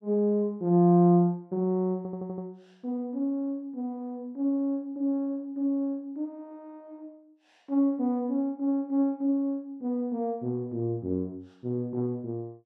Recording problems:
stutter; at 2 s

